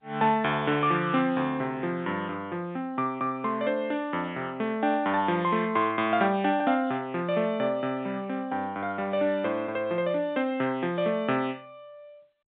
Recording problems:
phone line; 130 Hz to 3.7 kHz, G.711

